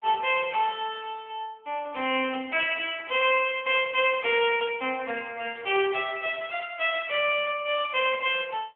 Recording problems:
telephone audio; 280 Hz to 3.3 kHz, AMR-NB

